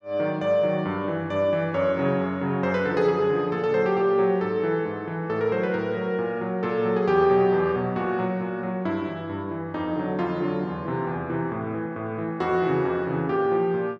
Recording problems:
none

